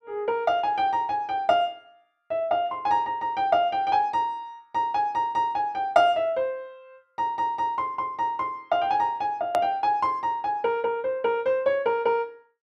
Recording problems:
edit click; at 9.5 s

